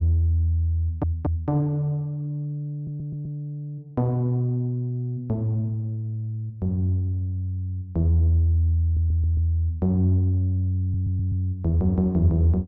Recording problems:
audio stuttering; 4 times, first at 1 s

